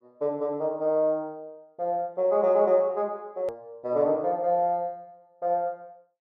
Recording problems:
hard cut with a click; at 3.5 s

